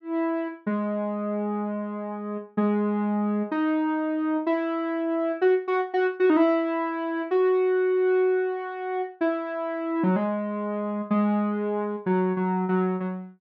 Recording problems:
none

